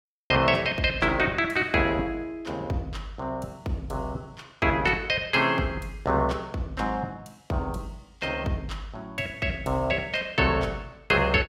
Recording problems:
none

